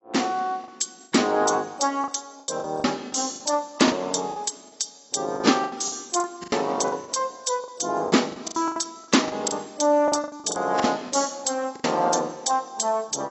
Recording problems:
codec artefacts; AAC, log-spectral distance 8 dB, nothing above 8 kHz
packet loss; 11% of the sound replaced, filled with the last packet

